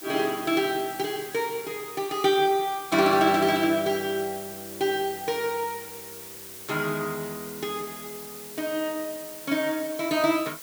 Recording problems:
hiss; slope 0 dB per octave, SNR 13 dB

